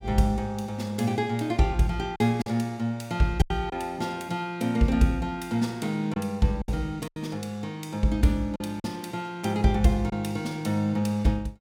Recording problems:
packet loss; 4% of the sound replaced, filled with silence

